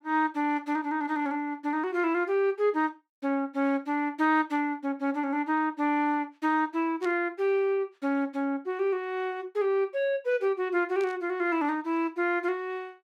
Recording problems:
static burst; at 7 s and at 11 s; peak -12 dB vs average level

